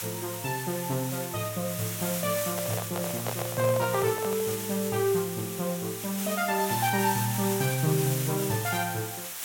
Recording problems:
hiss; slope +1 dB per octave, SNR 4 dB
handling noise; from 2.5 to 4.5 s; peak 0 dB vs average level

